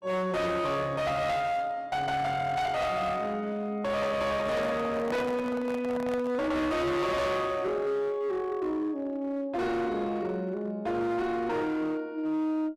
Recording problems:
distorted audio; hard clipping, signal-to-distortion ratio 8 dB
microphone handling noise; from 4.5 to 6.5 s; peak -5 dB vs average level

